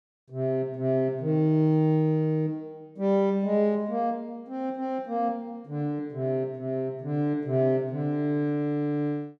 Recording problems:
none

